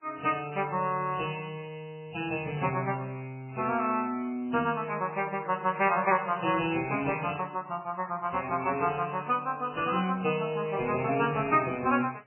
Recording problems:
lossy compression; MP3, then MP3, log-spectral distance 4 dB, nothing above 2.7 kHz

